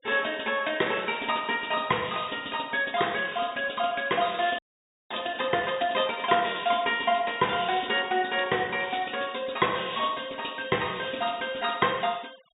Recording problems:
low-pass filter; nothing above 4 kHz
denoising artefacts; signal-to-artefact ratio 24 dB
frozen audio; at 4.5 s for 0.5 s

